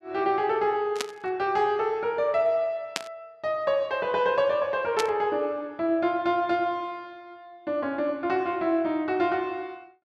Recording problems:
static burst; at 1 s, at 3 s and at 5 s; peak +2 dB vs average level

